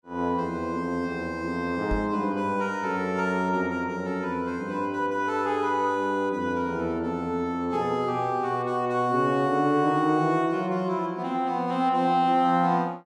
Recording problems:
knock on the microphone; at 2 s; peak -2 dB vs average level

